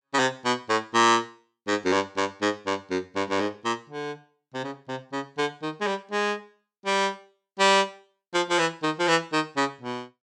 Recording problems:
none

